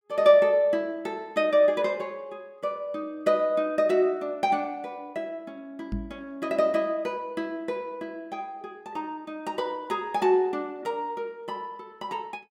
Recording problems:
knock on the microphone; at 6 s; peak -2 dB vs average level

